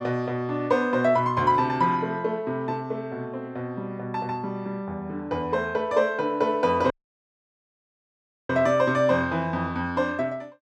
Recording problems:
audio cutting out; at 7 s for 1.5 s

